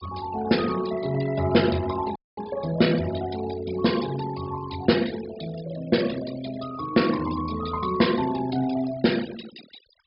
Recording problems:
treble missing; nothing above 5.5 kHz
denoising artefacts; signal-to-artefact ratio 14 dB
audio cutting out; at 2 s

